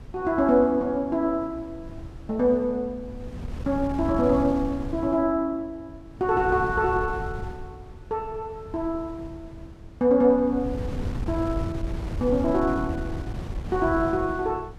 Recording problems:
wind noise; below 160 Hz, SNR 11 dB

